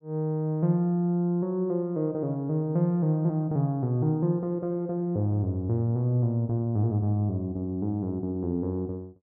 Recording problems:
none

